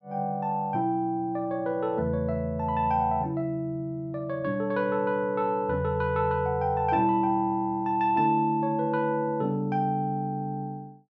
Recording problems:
none

